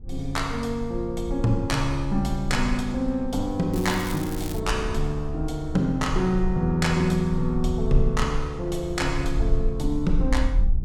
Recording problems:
rumble; below 48 Hz, SNR 7 dB
crackling; at 3.5 s; loose cable, SNR 14 dB

